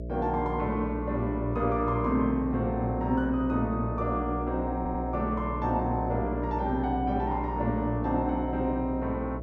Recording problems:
hum; 60 Hz, harmonics up to 660 Hz, SNR 6 dB
audio stuttering; at 5 s

